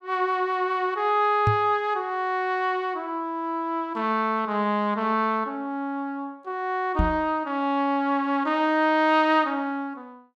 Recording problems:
knock on the microphone; at 1.5 s and at 7 s; peak +4 dB vs average level

